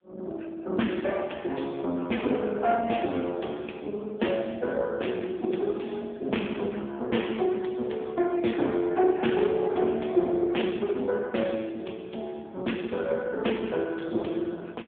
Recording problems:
phone line; 190 Hz to 3.5 kHz, AMR-NB

